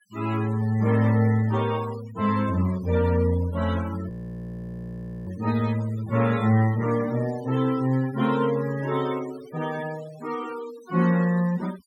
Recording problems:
denoising artefacts; signal-to-artefact ratio 18 dB
frozen audio; at 4 s for 1 s

